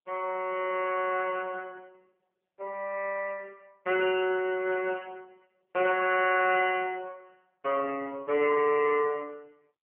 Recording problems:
telephone audio; 260 Hz to 2.7 kHz, AMR-NB

